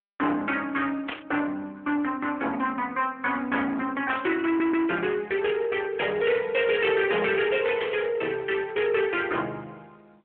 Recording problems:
telephone audio; 240 Hz to 3.5 kHz, AMR-NB
distortion; soft clipping, signal-to-distortion ratio 12 dB
burst of static; at 1 s, at 4 s and at 8 s; peak -2 dB vs average level
audio stuttering; at 4.5 s

